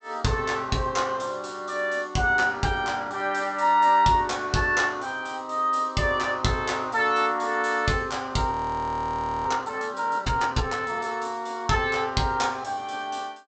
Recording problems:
treble cut off; nothing above 8 kHz
frozen audio; at 8.5 s for 1 s

